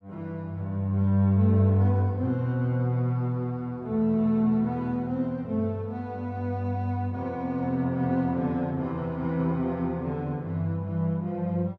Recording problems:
none

